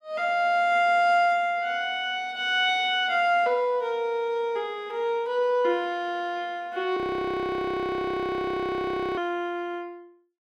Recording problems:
audio freezing; at 7 s for 2 s

